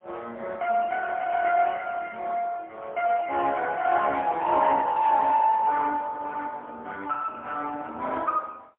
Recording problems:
telephone audio; 300 Hz to 3.4 kHz, AMR-NB, then MP3

